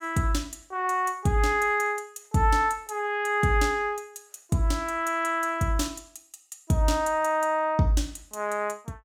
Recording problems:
none

